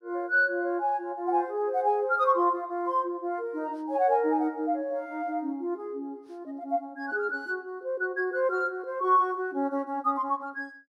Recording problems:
none

